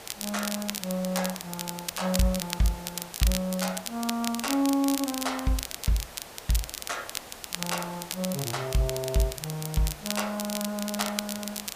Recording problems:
background hiss; slope -3 dB per octave, SNR 13 dB
crackling; vinyl, SNR 5 dB

